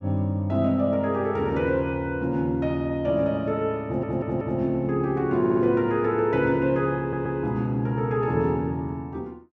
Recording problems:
stutter; at 4 s, at 5.5 s and at 7 s

